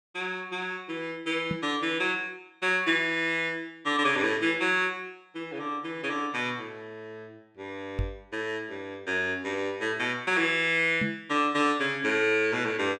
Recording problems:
knock on the microphone; at 1.5 s, at 8 s and at 11 s; peak 0 dB vs average level

